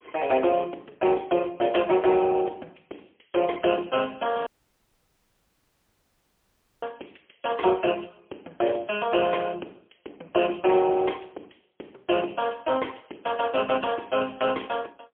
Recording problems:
telephone audio; 240 Hz to 3.3 kHz, AMR-NB, then MP3
audio cutting out; at 4.5 s for 2.5 s

